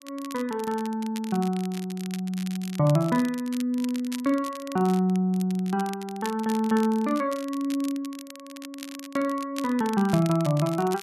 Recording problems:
crackle; vinyl, SNR 16 dB

